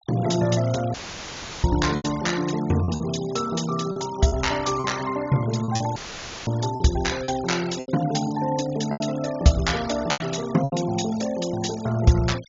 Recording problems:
treble missing; nothing above 7.2 kHz
noise reduction artefacts; signal-to-artefact ratio 15 dB
packet loss; 7% of the sound replaced, filled with repeated pitch periods
dropout; at 1 s for 0.5 s and at 6 s for 0.5 s; filled with static

